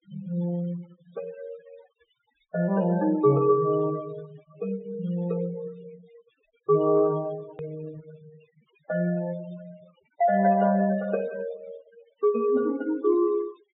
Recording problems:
treble missing; nothing above 4 kHz
denoising artefacts; signal-to-artefact ratio 22 dB
edit click; at 7.5 s

